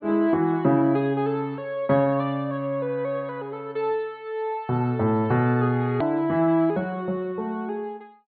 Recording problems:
treble cut off; nothing above 4.4 kHz
edit click; at 6 s

